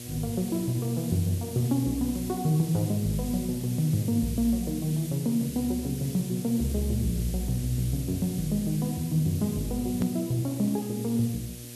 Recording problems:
hum; 60 Hz, harmonics up to 720 Hz, SNR 15 dB
background hiss; SNR 13 dB
click at an edit; at 10 s

